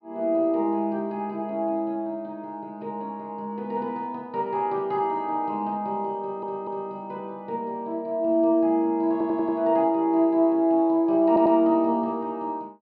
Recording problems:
treble missing; nothing above 5.5 kHz
stutter; at 6 s, at 9 s and at 11 s

